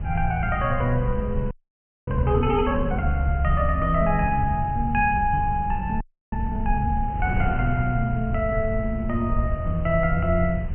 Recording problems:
treble missing; nothing above 3 kHz
rumble; below 88 Hz, SNR 7 dB
wind noise; below 120 Hz, SNR 12 dB
frozen audio; at 1.5 s for 0.5 s and at 6 s

